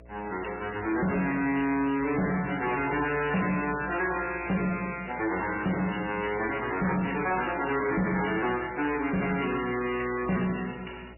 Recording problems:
lossy codec; MP3, log-spectral distance 8 dB, nothing above 2.8 kHz
distortion; hard clipping, uneven, signal-to-distortion ratio 8 dB
electrical hum; 60 Hz, harmonics up to 660 Hz, SNR 23 dB

